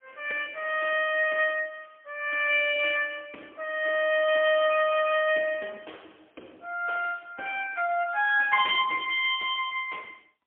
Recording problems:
phone line; 280 Hz to 3.3 kHz, AMR-NB, then MP3

